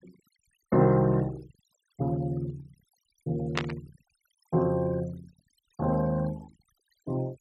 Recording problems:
denoising artefacts; signal-to-artefact ratio 23 dB
burst of static; at 3.5 s; peak +4 dB vs average level

